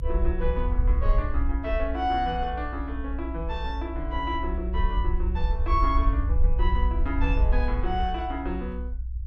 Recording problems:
rumble; below 60 Hz, SNR -2 dB

